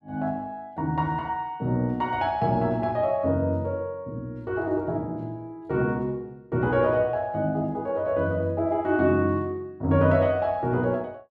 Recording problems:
none

